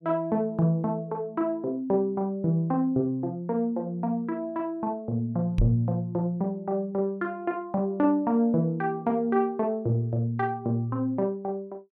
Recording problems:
microphone bump; at 5.5 s; peak +6 dB vs average level

